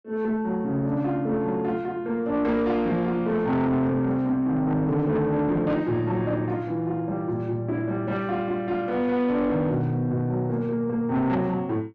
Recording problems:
distortion; soft clipping, signal-to-distortion ratio 11 dB

